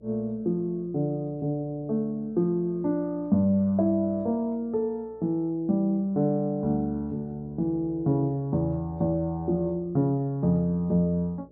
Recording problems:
hum; 60 Hz, harmonics up to 600 Hz, SNR 28 dB

